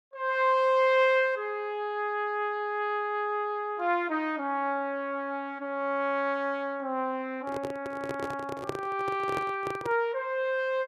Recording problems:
handling noise; from 7.5 to 10 s; peak 0 dB vs average level

